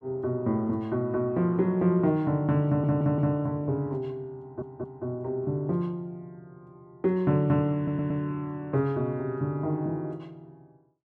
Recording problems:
audio stuttering; at 2.5 s, at 4.5 s and at 8 s

